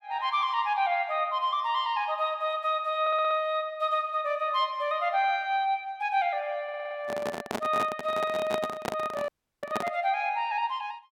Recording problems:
stutter; at 3 s and at 6.5 s
handling noise; from 7 to 10 s; peak +1 dB vs average level
dropout; at 9.5 s

